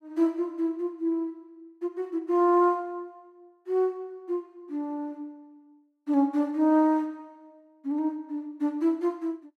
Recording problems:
none

